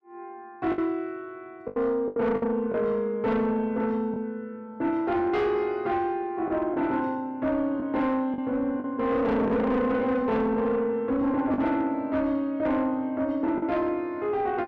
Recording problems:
distortion; soft clipping, signal-to-distortion ratio 11 dB
packet loss; 4% of the sound replaced, filled with the last packet

